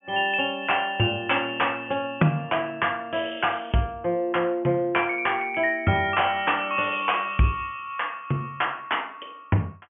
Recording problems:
low-pass filter; nothing above 3.3 kHz

